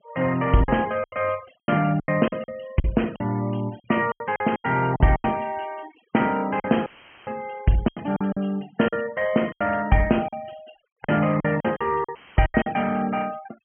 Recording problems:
low-pass filter; nothing above 3.2 kHz
denoising artefacts; signal-to-artefact ratio 23 dB
lost packets; 12% of the sound replaced, filled with silence
audio cutting out; at 7 s and at 12 s; filled with static

